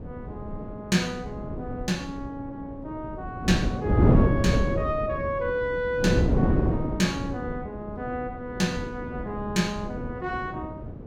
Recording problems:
wind on the microphone; below 310 Hz, SNR -2 dB

